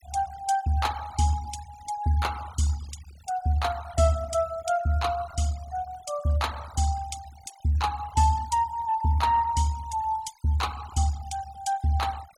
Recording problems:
noise reduction artefacts; signal-to-artefact ratio 19 dB

